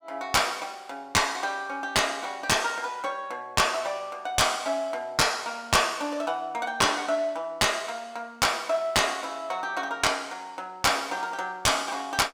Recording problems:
distortion; soft clipping, signal-to-distortion ratio 6 dB

